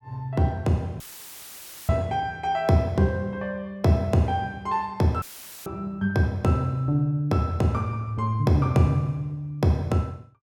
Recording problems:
dropout; at 1 s for 1 s and at 5 s; filled with static

